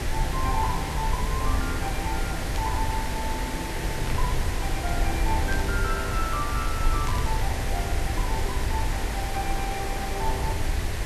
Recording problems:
hiss; slope -4 dB per octave, SNR 1 dB
low-frequency rumble; below 70 Hz, SNR -1 dB
burst of static; 4 times, first at 2.5 s; peak -2 dB vs average level

